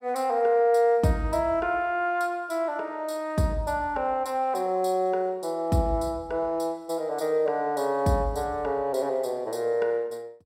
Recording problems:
none

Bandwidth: 16 kHz